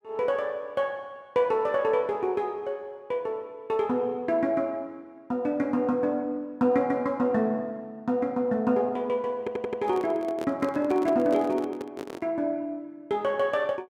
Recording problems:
audio stuttering; at 9.5 s
microphone handling noise; from 9.5 to 12 s; peak -2 dB vs average level

